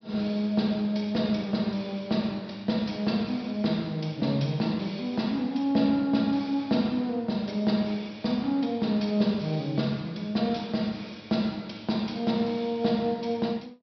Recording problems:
low-pass filter; nothing above 5.5 kHz

